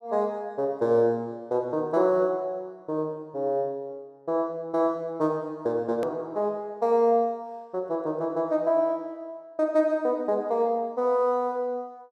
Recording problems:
edit click; at 6 s

